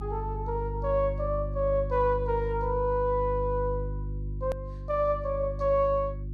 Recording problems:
hum; 50 Hz, harmonics up to 350 Hz, SNR 7 dB
edit click; at 4.5 s

